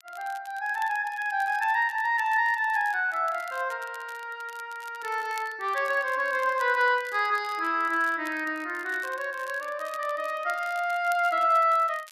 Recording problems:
crackling; vinyl, SNR 24 dB

